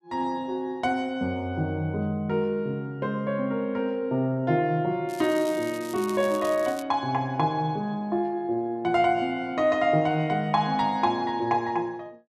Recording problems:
crackle; from 5 to 7 s; loose cable, SNR 17 dB

